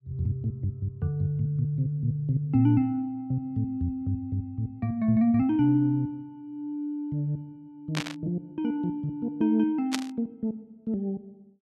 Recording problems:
burst of static; at 8 s and at 10 s; peak +2 dB vs average level

